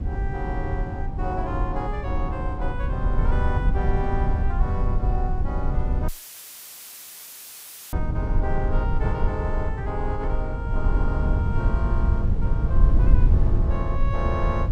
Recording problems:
low-frequency rumble; below 82 Hz, SNR -7 dB
audio cutting out; at 6 s for 2 s; filled with static

